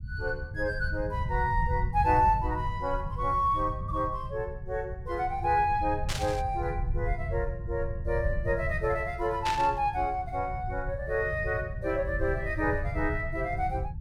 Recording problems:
rumble; below 110 Hz, SNR 6 dB
static burst; at 6 s and at 9.5 s; peak 0 dB vs average level

